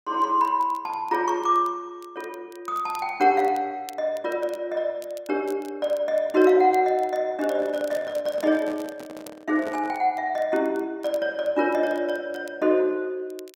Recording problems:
crackle; vinyl, SNR 27 dB
handling noise; from 7.5 to 10 s; peak -9 dB vs average level

